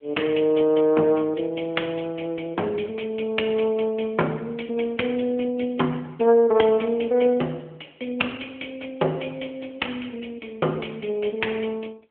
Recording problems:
phone line; 260 Hz to 3.3 kHz, AMR-NB

